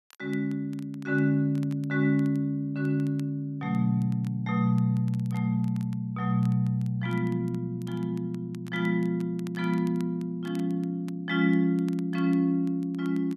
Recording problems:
crackling; vinyl, SNR 29 dB

